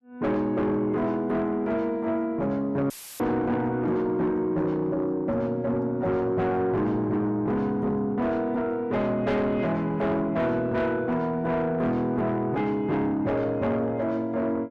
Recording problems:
distorted audio; soft clipping, signal-to-distortion ratio 10 dB
audio cutting out; at 3 s; filled with static

